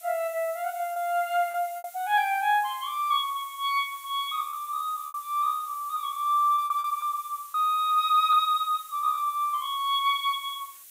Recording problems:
hiss; SNR 18 dB
packet loss; 5% of the sound replaced, filled with repeated pitch periods

